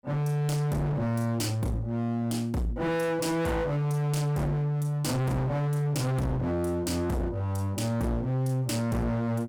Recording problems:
distorted audio; hard clipping, uneven, signal-to-distortion ratio 5 dB

